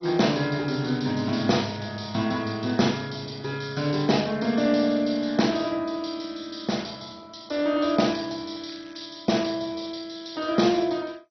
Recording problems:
lossy compression; MP2, log-spectral distance 6 dB, nothing above 5.8 kHz
crackle; from 1 to 2 s, at 8 s and at 8.5 s; loose cable, SNR 26 dB

